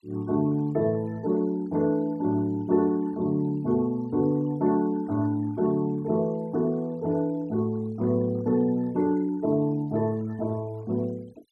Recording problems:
noise reduction artefacts; signal-to-artefact ratio 28 dB

